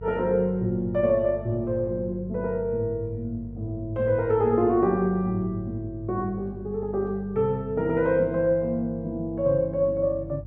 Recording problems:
hum; 50 Hz, harmonics up to 400 Hz, SNR 15 dB

